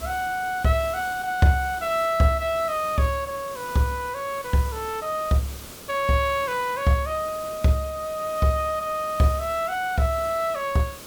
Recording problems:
hiss; SNR 16 dB

